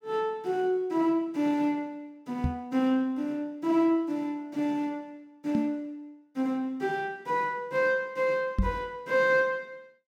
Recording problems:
microphone thump; at 2.5 s, at 5.5 s and at 8.5 s; peak +5 dB vs average level

